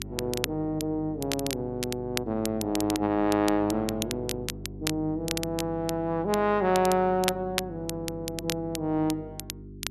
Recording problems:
hum; 50 Hz, harmonics up to 400 Hz, SNR 14 dB
crackle; vinyl, SNR 8 dB

